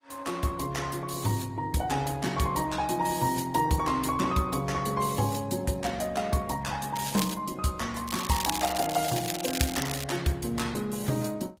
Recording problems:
codec artefacts; AAC, then Opus, log-spectral distance 6 dB
crackle; at 7 s and from 8 to 10 s; loose cable, SNR 6 dB

